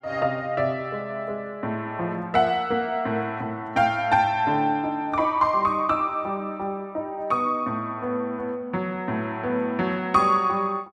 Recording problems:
none

